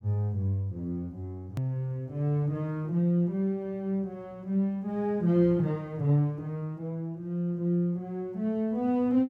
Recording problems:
hard cut with a click; at 1.5 s

